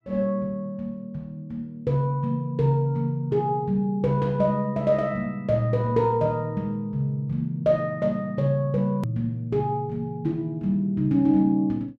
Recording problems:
hard cut with a click; at 9 s

